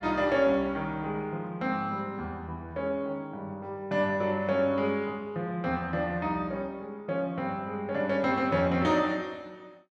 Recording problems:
none

